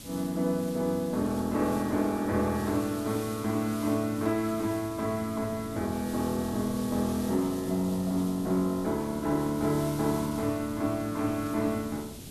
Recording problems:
background hiss; slope +4 dB per octave, SNR 16 dB
wind noise; below 300 Hz, SNR 18 dB

